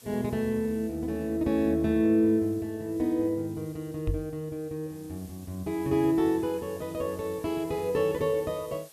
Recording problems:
hiss; slope 0 dB per octave, SNR 24 dB
microphone thump; at 4 s; peak +2 dB vs average level

